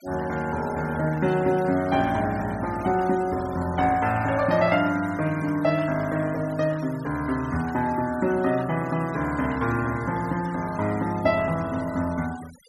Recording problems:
denoising artefacts; signal-to-artefact ratio 19 dB

